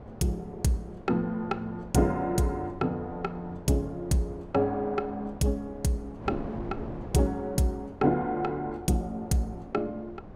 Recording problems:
wind noise; below 500 Hz, SNR 15 dB

